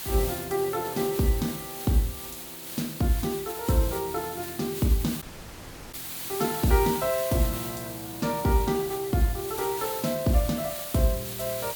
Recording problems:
hiss; slope 0 dB per octave, SNR 7 dB
audio cutting out; at 5 s for 0.5 s

